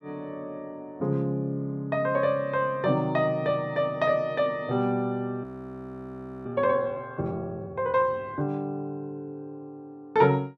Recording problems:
frozen audio; at 5.5 s for 1 s

